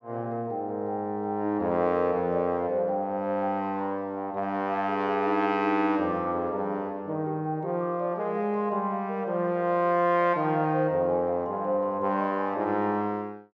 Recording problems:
none

